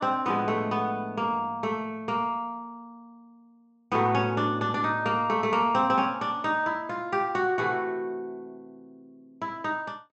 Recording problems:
treble cut off; nothing above 7.9 kHz

